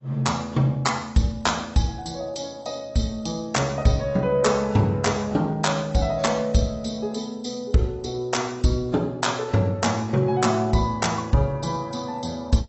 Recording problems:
lossy compression; AAC, log-spectral distance 5 dB, nothing above 7.8 kHz

